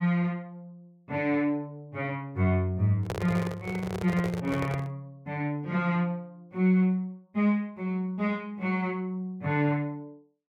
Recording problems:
microphone handling noise; from 3 to 5 s; peak 0 dB vs average level

